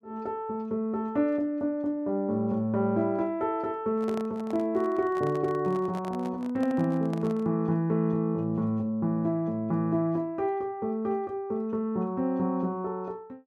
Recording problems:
microphone handling noise; from 4 to 7.5 s; peak -7 dB vs average level

